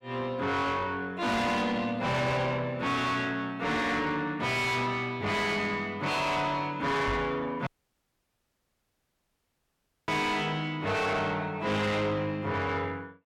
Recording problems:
distortion; soft clipping, signal-to-distortion ratio 7 dB
knock on the microphone; at 7 s; peak 0 dB vs average level
dropout; at 7.5 s for 2.5 s

